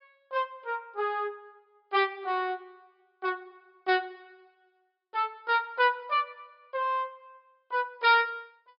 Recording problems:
low-pass filter; nothing above 5.5 kHz

